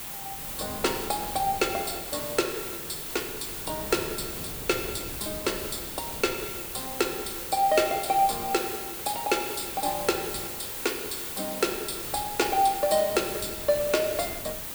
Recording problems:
background hiss; slope -1 dB per octave, SNR 5 dB
wind on the microphone; below 410 Hz, SNR 18 dB

